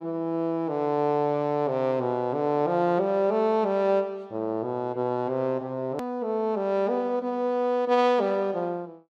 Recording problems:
edit click; at 6 s

